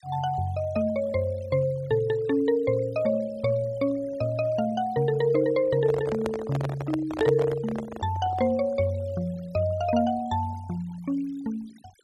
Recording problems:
noise reduction artefacts; signal-to-artefact ratio 23 dB
microphone handling noise; from 5.5 to 8.5 s; peak -1 dB vs average level

